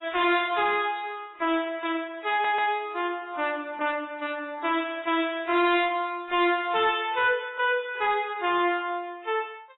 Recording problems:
codec artefacts; AAC, log-spectral distance 3 dB, nothing above 3.9 kHz
distortion; hard clipping, uneven, signal-to-distortion ratio 9 dB
audio stuttering; at 2.5 s

